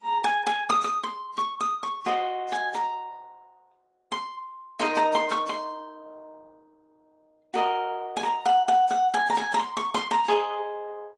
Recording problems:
lossy compression; Opus, then AAC, log-spectral distance 3 dB

